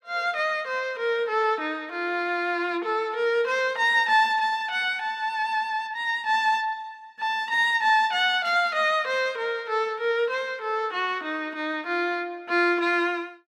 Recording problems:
none

